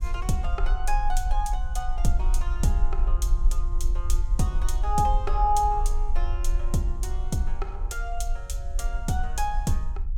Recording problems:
rumble; below 46 Hz, SNR -1 dB

